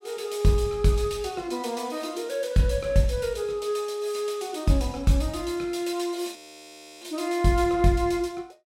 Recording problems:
frozen audio; at 6.5 s for 0.5 s

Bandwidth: 16 kHz